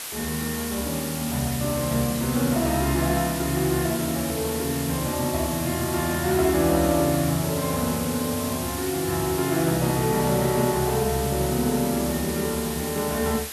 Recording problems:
hiss; slope +1 dB per octave, SNR 7 dB

